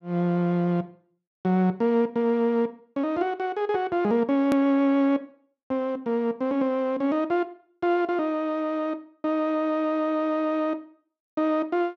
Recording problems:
hard cut with a click; at 4.5 s

